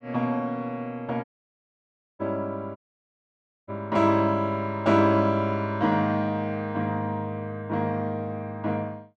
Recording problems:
audio cutting out; at 1 s for 1 s and at 3 s for 1 s

